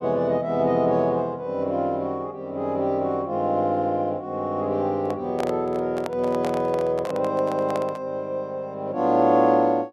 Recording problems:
microphone handling noise; from 5 to 8 s; peak -3 dB vs average level

